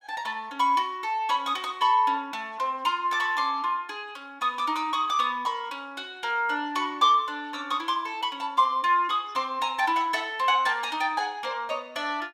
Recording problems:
none

